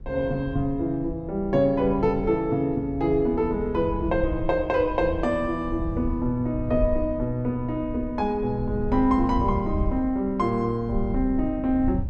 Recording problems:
rumble; below 86 Hz, SNR 10 dB

